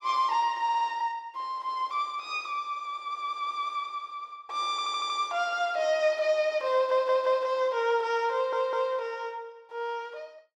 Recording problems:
audio stuttering; 4 times, first at 0.5 s

